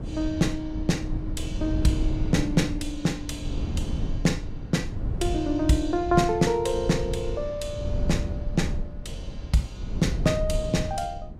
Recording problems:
wind on the microphone; below 120 Hz, SNR 5 dB

